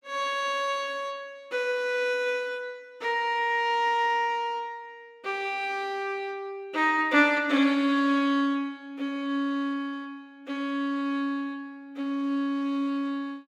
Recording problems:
none

